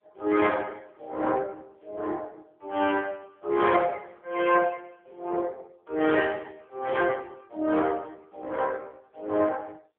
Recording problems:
phone line; 260 Hz to 2.8 kHz, AMR-NB

